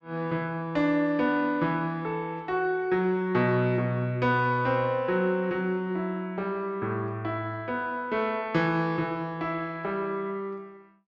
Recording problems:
treble cut off; nothing above 8 kHz

